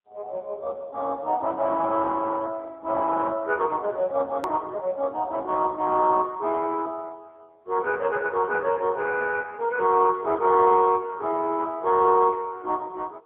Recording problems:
phone line; 320 Hz to 3.3 kHz, AMR-NB, then MP3
click at an edit; at 4.5 s

